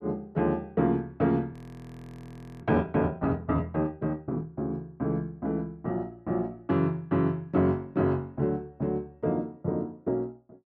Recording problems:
audio freezing; at 1.5 s for 1 s

